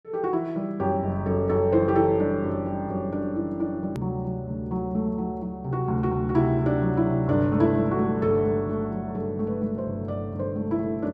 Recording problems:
edit click; at 4 s

